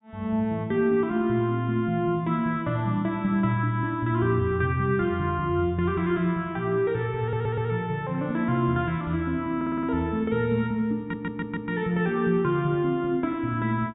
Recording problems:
treble missing; nothing above 4 kHz
audio stuttering; at 7 s, at 9.5 s and at 11 s

